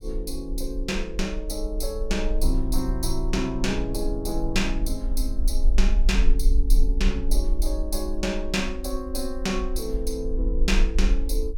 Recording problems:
rumble; below 40 Hz, SNR -1 dB

